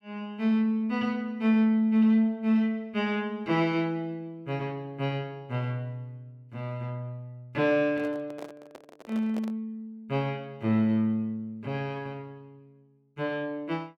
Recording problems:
microphone handling noise; from 8 to 9.5 s; peak -8 dB vs average level

